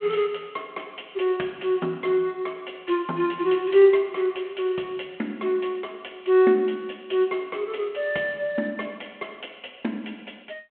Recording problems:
telephone audio; 240 Hz to 3.3 kHz, G.726

